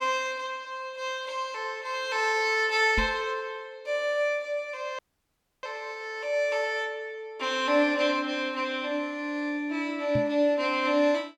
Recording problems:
knock on the microphone; at 3 s and at 10 s; peak +1 dB vs average level
audio cutting out; at 5 s for 0.5 s

